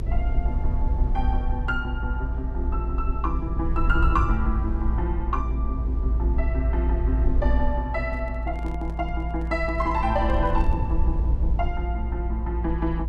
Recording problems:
rumble; below 58 Hz, strongest tone 56 Hz, SNR -3 dB
handling noise; from 8 to 11 s; peak -9 dB vs average level

